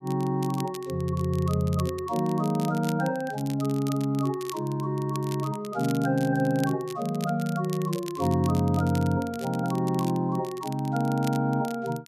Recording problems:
crackling; vinyl, SNR 18 dB

